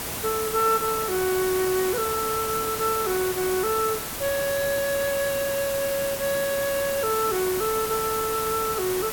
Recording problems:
background hiss; slope -3 dB per octave, SNR 4 dB

